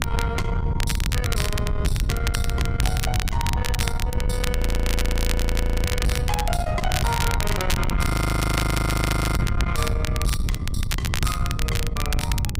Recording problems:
distorted audio; soft clipping, signal-to-distortion ratio 11 dB
mains hum; 60 Hz, harmonics up to 540 Hz, SNR 20 dB
wind noise; below 130 Hz, SNR -2 dB
crackling; vinyl, SNR 3 dB
audio freezing; at 4.5 s for 1.5 s and at 8 s for 1.5 s

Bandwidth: 15.5 kHz